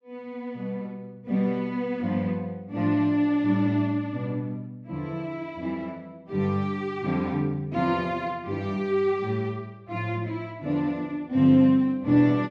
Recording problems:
none

